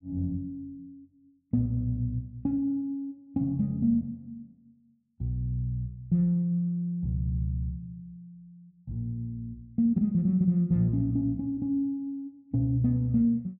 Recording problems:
none

